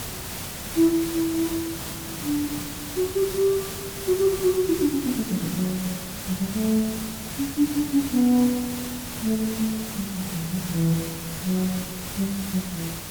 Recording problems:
background hiss; slope -2 dB per octave, SNR 7 dB

